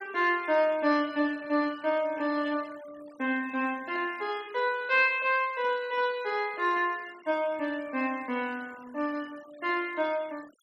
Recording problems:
denoising artefacts; signal-to-artefact ratio 24 dB

